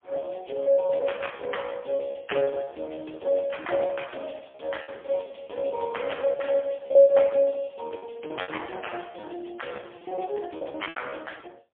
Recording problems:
phone line; 260 Hz to 3.3 kHz, AMR-NB, then MP3
lost packets; 12% of the sound replaced, filled with repeated pitch periods

